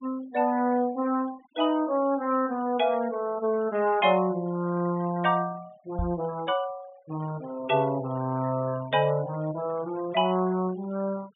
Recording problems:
treble cut off; nothing above 3.5 kHz
denoising artefacts; signal-to-artefact ratio 23 dB
microphone thump; at 6 s; peak 0 dB vs average level

